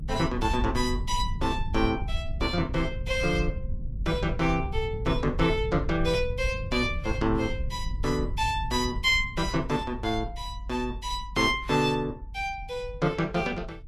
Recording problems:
codec artefacts; Vorbis, log-spectral distance 2 dB, nothing above 12.7 kHz
rumble; below 86 Hz, SNR 7 dB

